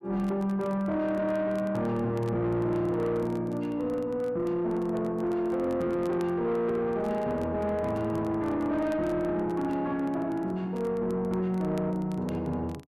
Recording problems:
distortion; soft clipping, signal-to-distortion ratio 11 dB
crackle; vinyl, SNR 28 dB

